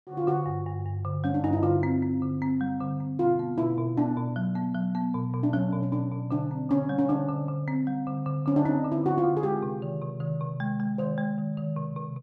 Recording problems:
none

